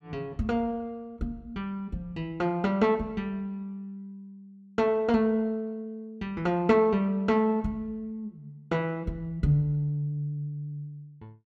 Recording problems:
none

